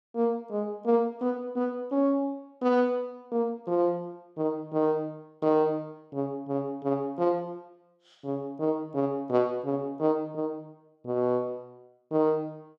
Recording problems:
none

